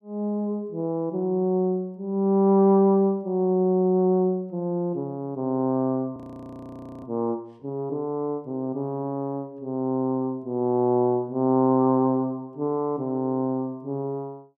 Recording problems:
frozen audio; at 6 s for 1 s

